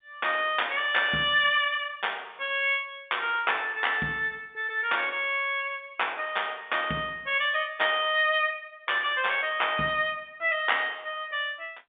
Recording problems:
phone line; 190 Hz to 3.7 kHz, G.711

